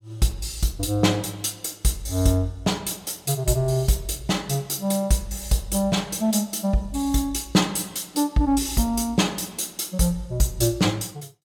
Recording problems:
none

